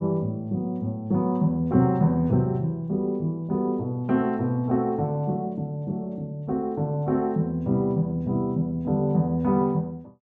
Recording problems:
none

